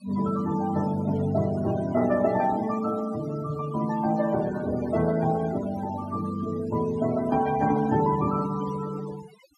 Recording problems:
noise reduction artefacts; signal-to-artefact ratio 15 dB

